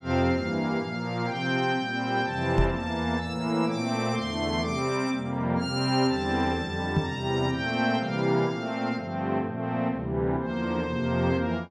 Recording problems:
microphone bump; at 2.5 s and at 7 s; peak +6 dB vs average level

